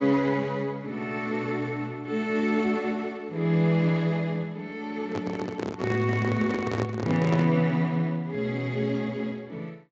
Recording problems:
codec artefacts; Speex, log-spectral distance 3 dB, nothing above 17.7 kHz
microphone handling noise; from 5 to 7.5 s; peak +1 dB vs average level

